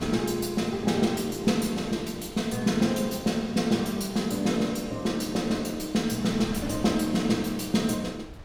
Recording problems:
wind on the microphone; below 390 Hz, SNR 19 dB

